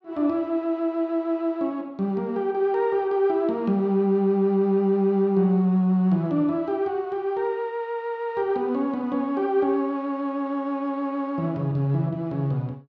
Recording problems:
none

